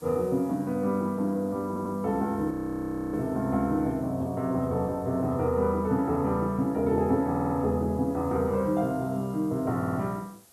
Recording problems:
hiss; SNR 28 dB
audio stuttering; at 1.5 s, at 7.5 s and at 10 s
frozen audio; at 2.5 s for 0.5 s

